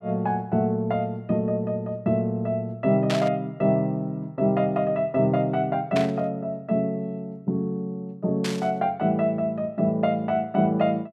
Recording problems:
static burst; at 3 s, at 6 s and at 8.5 s; peak -1 dB vs average level

